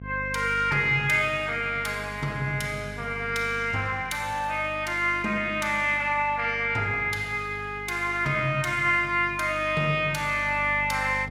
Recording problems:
hum; 50 Hz, harmonics up to 500 Hz, SNR 17 dB

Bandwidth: 17 kHz